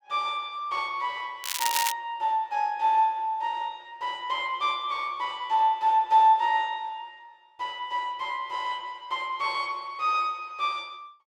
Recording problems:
crackle; at 1.5 s; loose cable, SNR 2 dB

